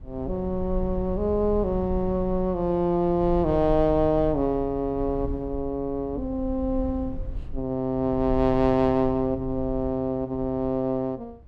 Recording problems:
rumble; below 74 Hz, SNR 12 dB

